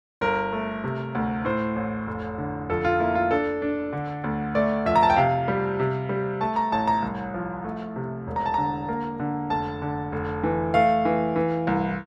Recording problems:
none

